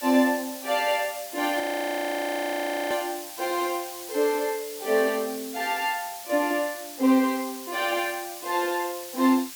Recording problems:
hiss; slope +3 dB per octave, SNR 11 dB
audio freezing; at 1.5 s for 1.5 s

